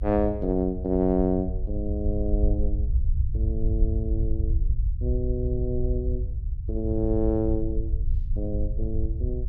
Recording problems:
low-frequency rumble; below 70 Hz, SNR 0 dB

